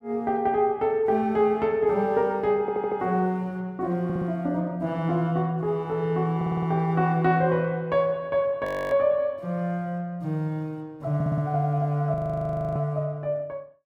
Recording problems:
audio stuttering; 4 times, first at 2.5 s
frozen audio; at 8.5 s and at 12 s for 0.5 s

